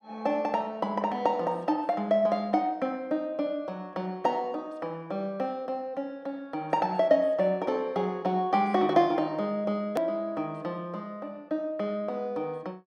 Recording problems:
edit click; at 10 s

